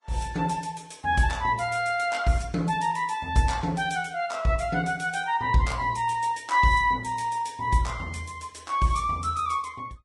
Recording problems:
lossy codec; Vorbis, log-spectral distance 3 dB, nothing above 10.4 kHz

